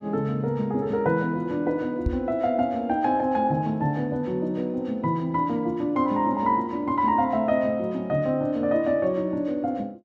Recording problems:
microphone thump; at 2 s; peak +3 dB vs average level

